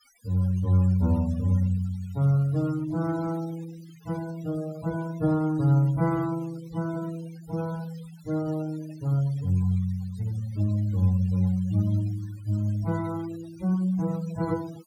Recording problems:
noise reduction artefacts; signal-to-artefact ratio 21 dB

